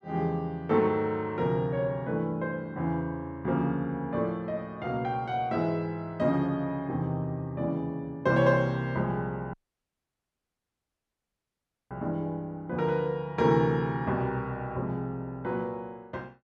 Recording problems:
audio cutting out; at 9.5 s for 2.5 s

